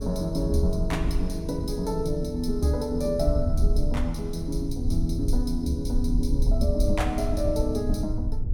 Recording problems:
low-frequency rumble; below 68 Hz, SNR 2 dB

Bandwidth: 17.5 kHz